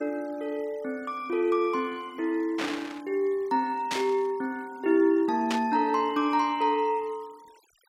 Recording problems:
noise reduction artefacts; signal-to-artefact ratio 27 dB
burst of static; at 2.5 s, at 4 s and at 5.5 s; peak 0 dB vs average level

